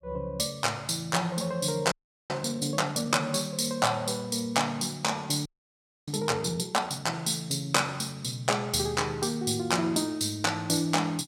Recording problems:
frozen audio; at 2 s and at 5.5 s for 0.5 s

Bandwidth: 16.5 kHz